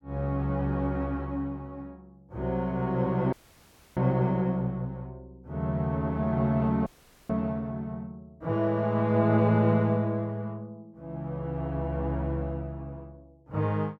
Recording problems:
audio cutting out; at 3.5 s for 0.5 s and at 7 s

